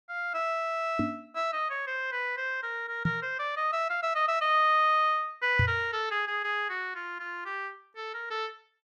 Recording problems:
knock on the microphone; at 1 s, at 3 s and at 5.5 s; peak +4 dB vs average level

